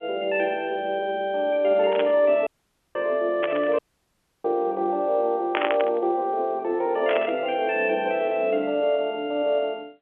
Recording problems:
phone line; 300 Hz to 3.5 kHz, G.711
static burst; 4 times, first at 2 s; peak +1 dB vs average level
dropout; at 2.5 s and at 4 s for 0.5 s

